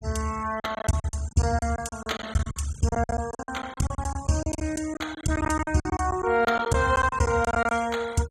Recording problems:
denoising artefacts; signal-to-artefact ratio 20 dB
packet loss; 18% of the sound replaced, filled with silence

